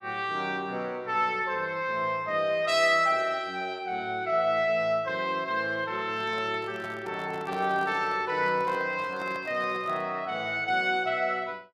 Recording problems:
microphone handling noise; from 6 to 10 s; peak -8 dB vs average level

